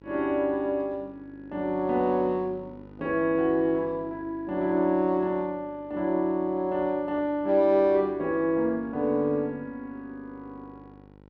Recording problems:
hum; 50 Hz, harmonics up to 1.5 kHz, SNR 24 dB

